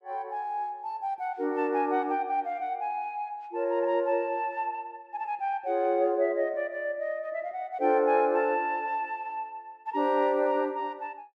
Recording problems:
none

